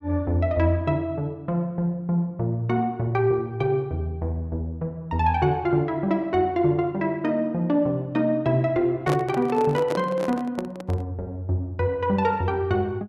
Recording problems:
handling noise; from 9 to 11 s; peak +1 dB vs average level

